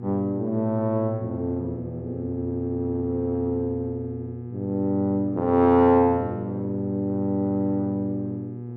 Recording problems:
hum; 60 Hz, harmonics up to 840 Hz, SNR 11 dB

